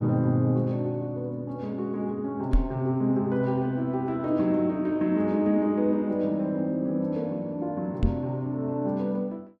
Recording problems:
microphone thump; at 2.5 s and at 8 s; peak +6 dB vs average level

